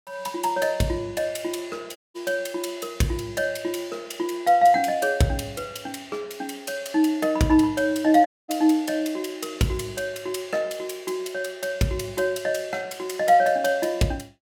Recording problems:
audio cutting out; at 2 s and at 8.5 s

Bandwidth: 17 kHz